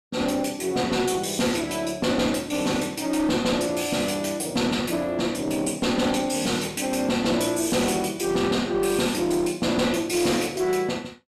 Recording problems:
distorted audio; hard clipping, uneven, signal-to-distortion ratio 11 dB

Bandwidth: 13.5 kHz